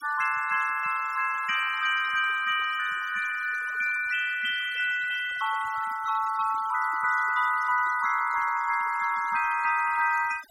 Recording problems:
noise reduction artefacts; signal-to-artefact ratio 17 dB

